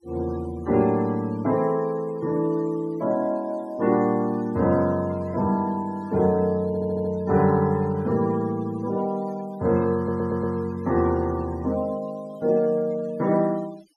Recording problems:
noise reduction artefacts; signal-to-artefact ratio 24 dB
stutter; at 6.5 s and at 10 s

